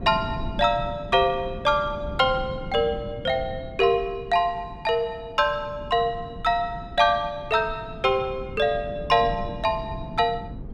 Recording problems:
wind noise; below 220 Hz, SNR 13 dB

